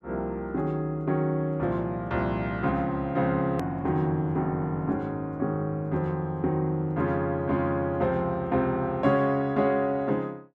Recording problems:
click at an edit; at 3.5 s

